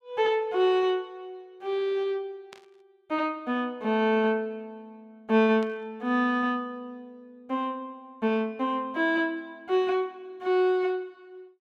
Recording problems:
static burst; at 2.5 s and at 5.5 s; peak -14 dB vs average level

